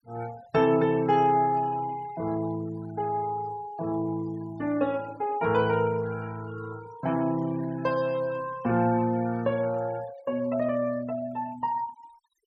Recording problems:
noise reduction artefacts; signal-to-artefact ratio 21 dB

